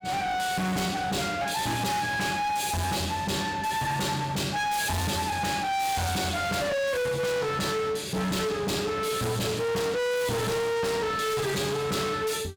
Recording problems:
distorted audio; hard clipping, signal-to-distortion ratio 6 dB

